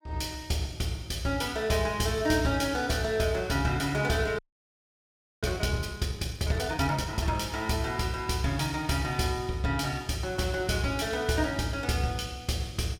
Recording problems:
audio freezing; at 4.5 s for 1 s

